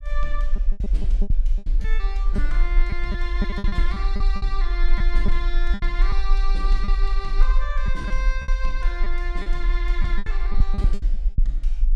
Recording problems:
rumble; below 38 Hz, SNR -8 dB
lost packets; 12% of the sound replaced, filled with repeated pitch periods

